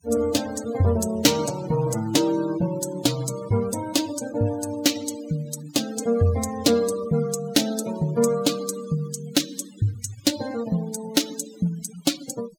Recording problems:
noise reduction artefacts; signal-to-artefact ratio 15 dB

